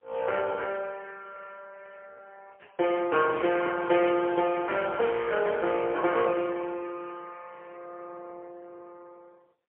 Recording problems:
phone line; 370 Hz to 3.1 kHz, AMR-NB, then MP3

